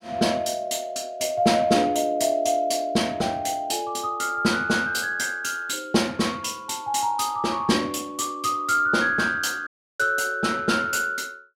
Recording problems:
audio cutting out; at 9.5 s

